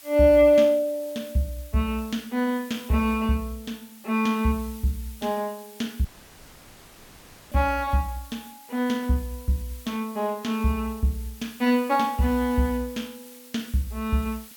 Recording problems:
hiss; slope +2 dB per octave, SNR 21 dB
audio cutting out; at 6 s for 1.5 s

